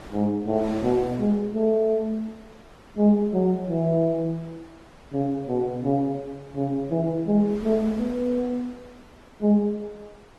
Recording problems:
lossy codec; Opus, log-spectral distance 2 dB
wind on the microphone; below 1.4 kHz, SNR 22 dB

